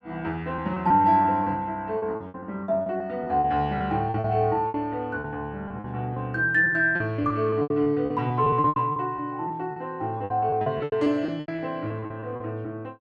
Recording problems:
lost packets; 15% of the sound replaced, filled with repeated pitch periods

